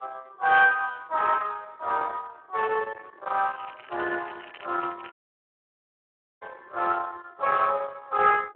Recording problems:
phone line; 300 Hz to 3.1 kHz, Speex
distortion; soft clipping, signal-to-distortion ratio 9 dB
wind noise; below 1.6 kHz, SNR 18 dB
crackle; from 3.5 to 5 s; loose cable, SNR 21 dB
audio cutting out; at 5 s for 1.5 s

